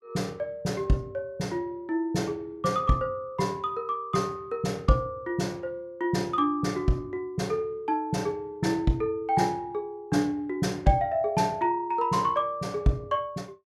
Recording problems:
none

